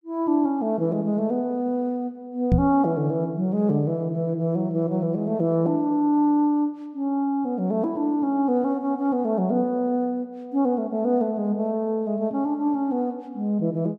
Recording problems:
knock on the microphone; at 2.5 s; peak +7 dB vs average level

